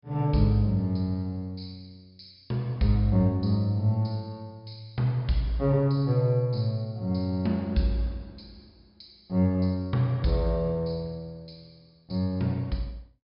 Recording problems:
treble missing; nothing above 5.5 kHz

